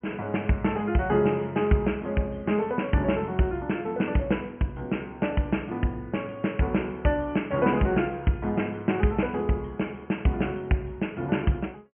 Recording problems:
low-pass filter; nothing above 3 kHz

